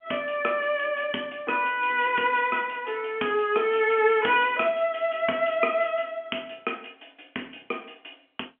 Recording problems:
phone line; 220 Hz to 3.3 kHz, G.711

